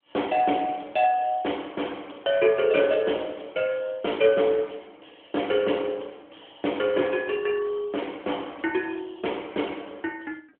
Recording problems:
phone line; 220 Hz to 3.4 kHz, AMR-NB

